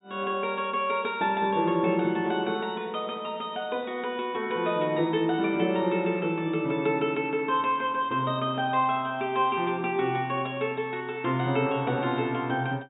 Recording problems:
low-pass filter; nothing above 4 kHz

